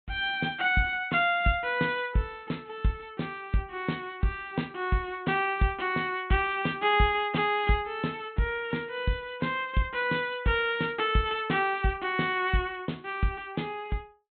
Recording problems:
low-pass filter; nothing above 4 kHz

